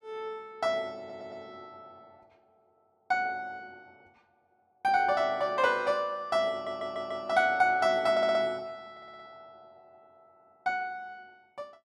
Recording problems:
stutter; 4 times, first at 1 s

